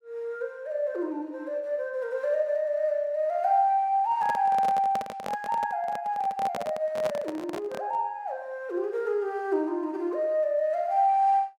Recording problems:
microphone handling noise; from 4 to 8 s; peak -2 dB vs average level

